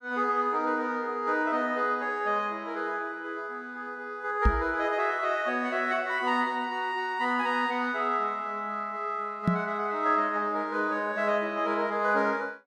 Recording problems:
knock on the microphone; at 4.5 s and at 9.5 s; peak +7 dB vs average level

